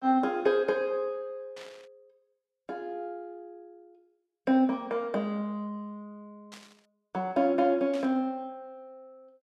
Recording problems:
static burst; at 1.5 s, at 6.5 s and at 8 s; peak -12 dB vs average level

